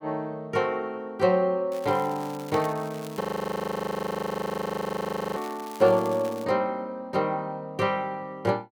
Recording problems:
crackling; from 1.5 to 3 s and from 5.5 to 6.5 s; loose cable, SNR 19 dB
frozen audio; at 3 s for 2 s

